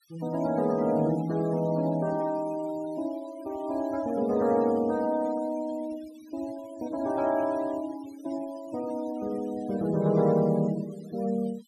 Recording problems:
noise reduction artefacts; signal-to-artefact ratio 21 dB

